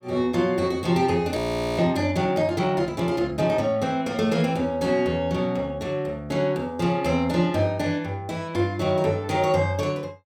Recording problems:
frozen audio; at 1.5 s

